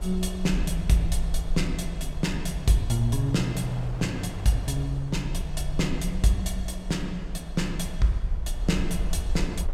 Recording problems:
rumble; below 54 Hz, SNR 7 dB
wind noise; below 780 Hz, SNR 16 dB

